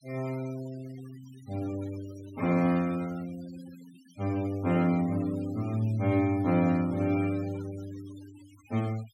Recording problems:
denoising artefacts; signal-to-artefact ratio 21 dB

